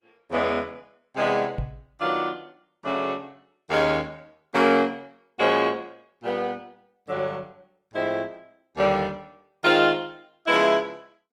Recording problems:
lossy codec; Opus, log-spectral distance 3 dB, nothing above 18.3 kHz
microphone thump; at 1.5 s; peak -2 dB vs average level

